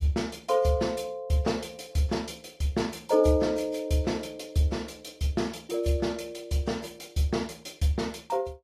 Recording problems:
codec artefacts; AAC, log-spectral distance 3 dB

